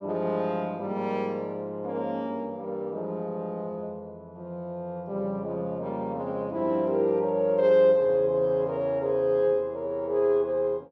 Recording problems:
none

